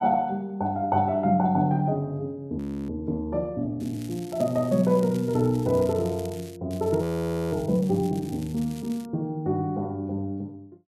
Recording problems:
audio freezing; at 2.5 s and at 7 s for 0.5 s
crackling; from 4 to 6.5 s and from 6.5 to 9 s; loose cable, SNR 21 dB

